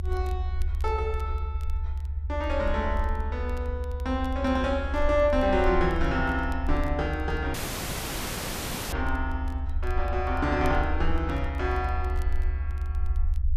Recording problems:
rumble; below 74 Hz, SNR 3 dB
crackling; vinyl, SNR 29 dB
dropout; at 7.5 s for 1.5 s

